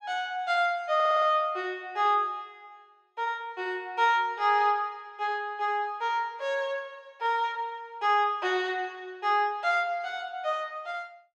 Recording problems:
audio stuttering; at 1 s

